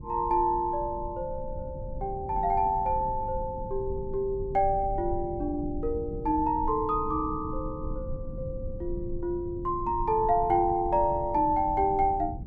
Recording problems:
rumble; below 120 Hz, SNR 11 dB

